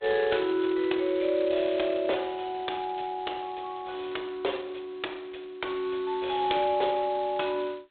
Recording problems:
phone line; 300 Hz to 3.9 kHz, G.726

